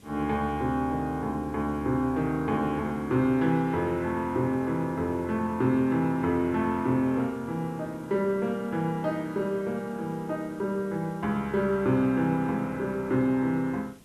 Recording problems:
background hiss; SNR 26 dB

